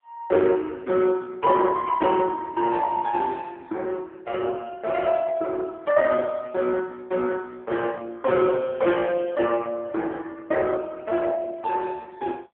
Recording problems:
telephone audio; 280 Hz to 3.3 kHz, AMR-NB

